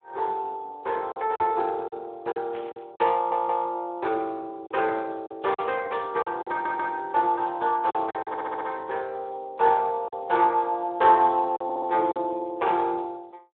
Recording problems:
phone line; 280 Hz to 3.5 kHz, Speex
lost packets; 6% of the sound replaced, filled with silence
burst of static; at 2.5 s; peak -16 dB vs average level
audio stuttering; 4 times, first at 3 s

